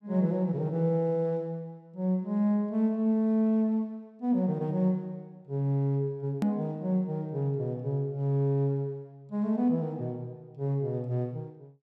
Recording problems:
click at an edit; at 6.5 s

